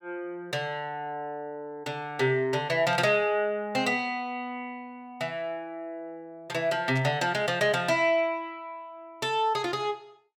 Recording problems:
burst of static; at 3 s and at 7 s; peak -11 dB vs average level

